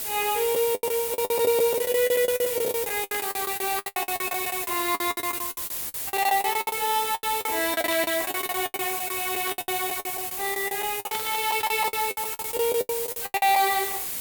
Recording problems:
background hiss; slope 0 dB per octave, SNR 2 dB
lost packets; 22% of the sound replaced, filled with the last packet
burst of static; 4 times, first at 3 s; peak -5 dB vs average level

